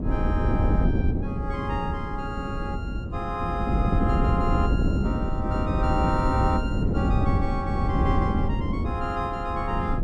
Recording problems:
wind on the microphone; below 220 Hz, SNR -4 dB

